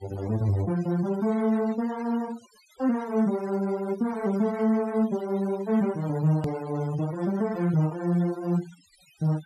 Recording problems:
noise reduction artefacts; signal-to-artefact ratio 18 dB
hard cut with a click; at 6.5 s

